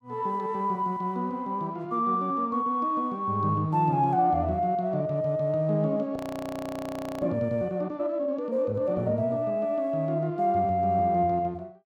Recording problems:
frozen audio; at 6 s for 1 s

